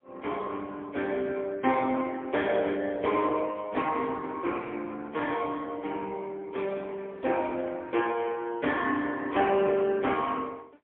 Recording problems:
phone line; 240 Hz to 3.4 kHz, AMR-NB, then MP3

